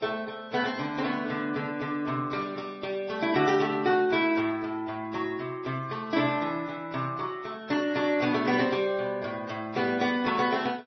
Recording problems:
lossy codec; MP3, then AAC, log-spectral distance 3 dB, nothing above 5.8 kHz

